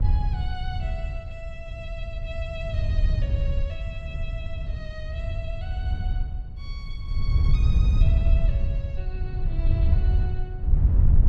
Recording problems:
wind on the microphone; below 82 Hz, SNR -14 dB

